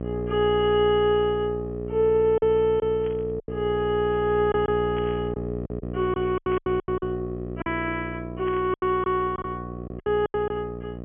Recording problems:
treble cut off; nothing above 3.3 kHz
hum; 60 Hz, harmonics up to 780 Hz, SNR 9 dB
packet loss; 8% of the sound replaced, filled with silence
static burst; 4 times, first at 3 s; peak -13 dB vs average level

